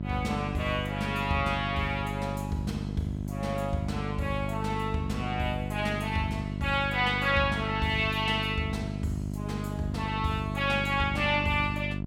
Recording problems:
electrical hum; 50 Hz, harmonics up to 700 Hz, SNR 4 dB

